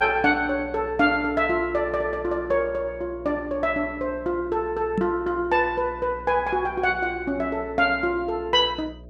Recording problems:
hum; 60 Hz, harmonics up to 660 Hz, SNR 19 dB
knock on the microphone; at 5 s; peak +2 dB vs average level

